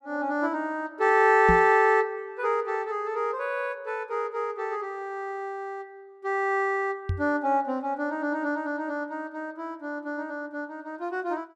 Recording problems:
microphone thump; at 1.5 s and at 7 s; peak +3 dB vs average level

